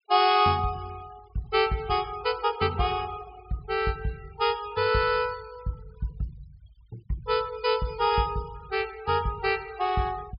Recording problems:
low-pass filter; nothing above 5.5 kHz
denoising artefacts; signal-to-artefact ratio 24 dB

